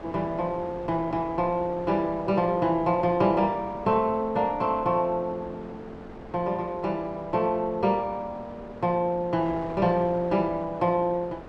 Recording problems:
wind noise; below 860 Hz, SNR 16 dB

